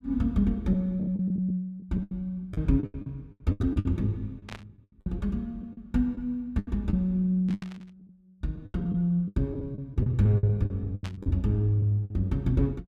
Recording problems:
lost packets; 15% of the sound replaced, filled with the last packet
burst of static; at 4.5 s, at 7.5 s and at 11 s; peak -9 dB vs average level

